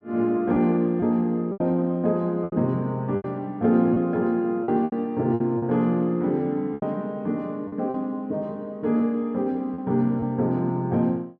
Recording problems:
packet loss; 7% of the sound replaced, filled with repeated pitch periods

